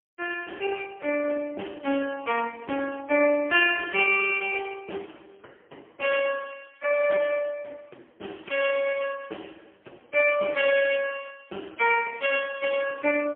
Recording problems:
phone line; 220 Hz to 3.1 kHz, AMR-NB, then MP3

